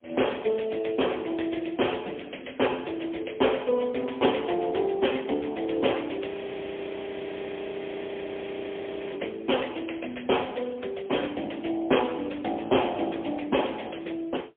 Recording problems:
telephone audio; 280 Hz to 3.4 kHz, AMR-NB, then MP3
frozen audio; at 6.5 s for 3 s

